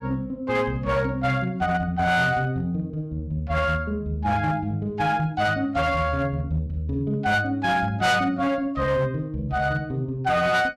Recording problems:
distorted audio; hard clipping, signal-to-distortion ratio 12 dB

